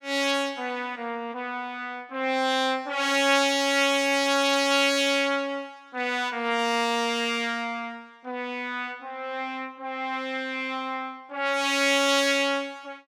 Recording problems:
none

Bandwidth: 17.5 kHz